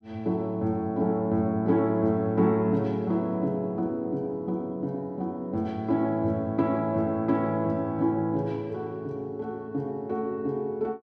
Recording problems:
none

